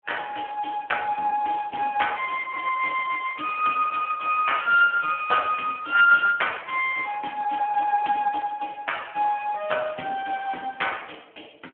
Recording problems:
phone line; 240 Hz to 3.2 kHz, Speex

